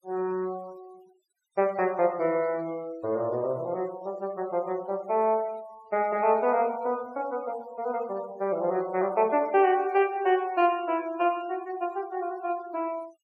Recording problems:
denoising artefacts; signal-to-artefact ratio 24 dB

